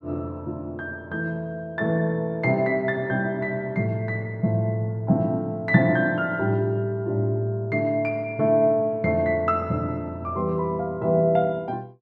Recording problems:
none

